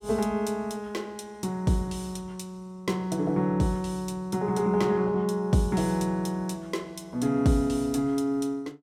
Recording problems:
none

